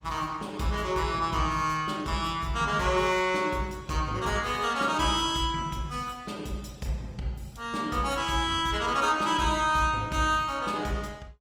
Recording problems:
lossy codec; Opus, log-spectral distance 3 dB, nothing above 19 kHz

